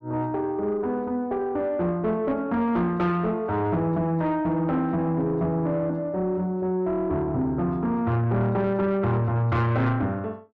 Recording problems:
distortion; soft clipping, signal-to-distortion ratio 10 dB

